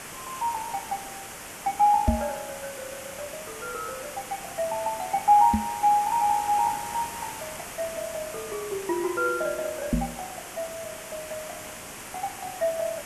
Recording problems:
background hiss; SNR 10 dB
knock on the microphone; at 2 s, at 5.5 s and at 10 s; peak +8 dB vs average level

